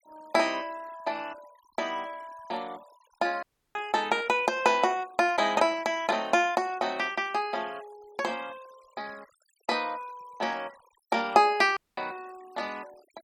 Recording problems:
denoising artefacts; signal-to-artefact ratio 25 dB
dropout; at 3.5 s and at 12 s

